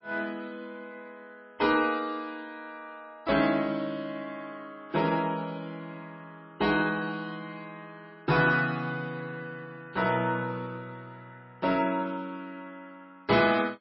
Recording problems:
codec artefacts; MP3, log-spectral distance 2 dB, nothing above 4.6 kHz

